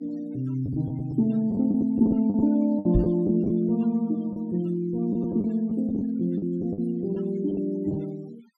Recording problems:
noise reduction artefacts; signal-to-artefact ratio 24 dB
lost packets; 8% of the sound replaced, filled with the last packet
microphone bump; at 3 s; peak +5 dB vs average level

